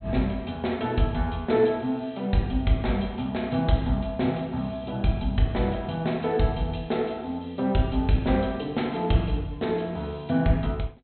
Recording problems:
treble missing; nothing above 4.2 kHz

